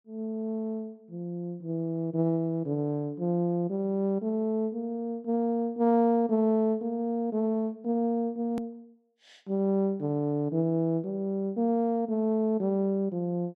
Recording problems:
edit click; at 8.5 s

